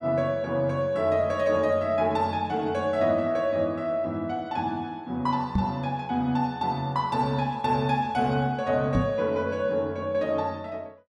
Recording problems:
microphone bump; at 5.5 s and at 9 s; peak +5 dB vs average level

